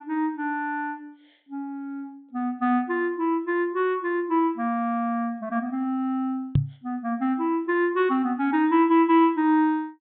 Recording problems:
treble cut off; nothing above 4 kHz
knock on the microphone; at 6.5 s; peak +7 dB vs average level

